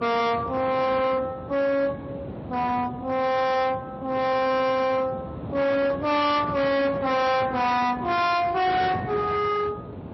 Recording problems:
lossy codec; Speex, then MP3, log-spectral distance 3 dB, nothing above 5.7 kHz
distortion; hard clipping, uneven, signal-to-distortion ratio 6 dB
wind noise; below 670 Hz, SNR 12 dB

